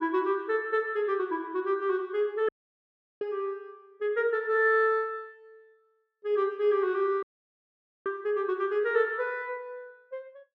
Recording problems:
dropout; at 2.5 s for 0.5 s and at 7 s for 1 s

